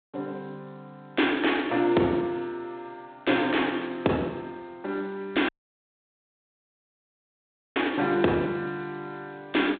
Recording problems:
telephone audio; 220 Hz to 3.7 kHz, G.726
dropout; at 5.5 s for 2.5 s

